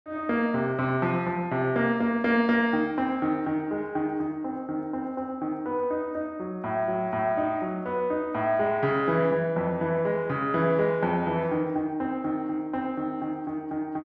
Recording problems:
none

